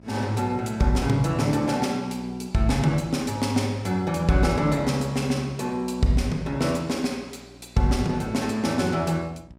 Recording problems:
hum; 60 Hz, harmonics up to 1.6 kHz, SNR 25 dB

